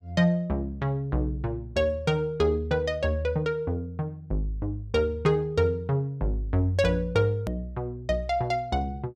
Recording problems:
click at an edit; at 7.5 s

